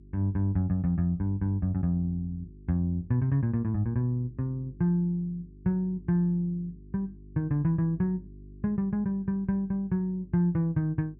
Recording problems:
electrical hum; 50 Hz, harmonics up to 400 Hz, SNR 21 dB

